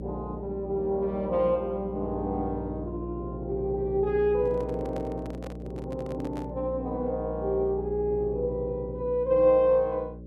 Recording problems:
hum; 60 Hz, harmonics up to 600 Hz, SNR 10 dB
microphone handling noise; from 4.5 to 6.5 s; peak -10 dB vs average level

